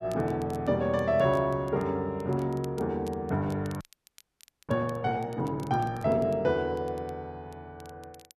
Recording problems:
crackling; vinyl, SNR 27 dB
audio freezing; at 4 s for 1 s

